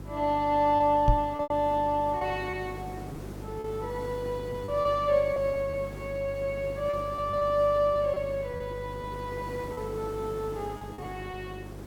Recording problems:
hum; 50 Hz, harmonics up to 400 Hz, SNR 14 dB
background hiss; SNR 16 dB
packet loss; 6% of the sound replaced, filled with repeated pitch periods
microphone thump; at 1 s; peak +8 dB vs average level

